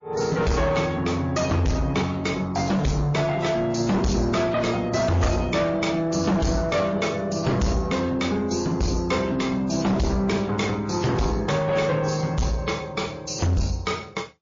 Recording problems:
lossy codec; AAC, then MP3, log-spectral distance 4 dB, nothing above 6.5 kHz
distortion; soft clipping, signal-to-distortion ratio 6 dB

